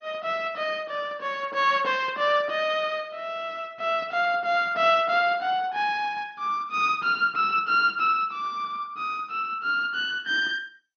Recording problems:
codec artefacts; MP2, log-spectral distance 2 dB, nothing above 6.2 kHz

